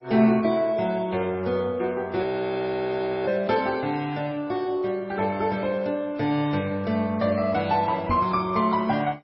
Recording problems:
codec artefacts; MP3, then MP2, log-spectral distance 2 dB, nothing above 5.2 kHz
frozen audio; at 2 s for 1 s
microphone bump; at 8 s; peak -1 dB vs average level

